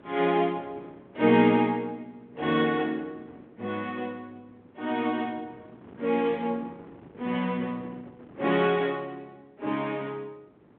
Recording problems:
phone line; 220 Hz to 3.6 kHz, G.726
wind noise; below 490 Hz, SNR 23 dB

